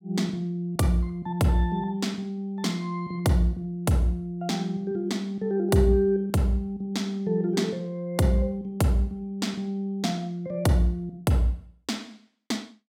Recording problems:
none

